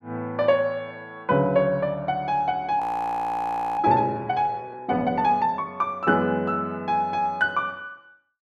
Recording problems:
audio freezing; at 3 s for 1 s

